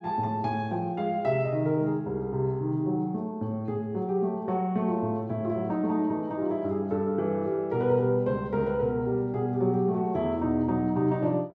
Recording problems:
none

